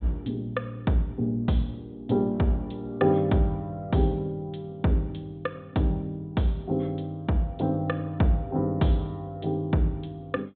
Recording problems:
low-pass filter; nothing above 4 kHz

